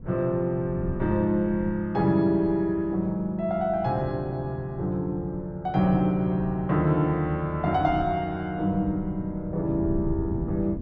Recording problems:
wind on the microphone; below 190 Hz, SNR 13 dB

